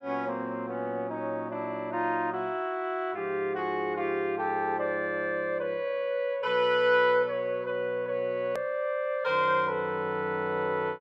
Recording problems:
edit click; at 8.5 s

